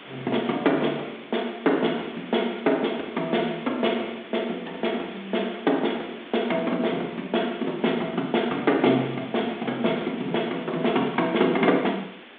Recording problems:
telephone audio; 220 Hz to 3.6 kHz, G.726
hiss; SNR 18 dB

